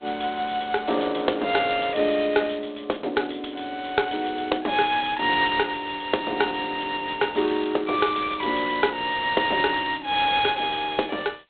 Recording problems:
telephone audio; 300 Hz to 3.5 kHz, G.726

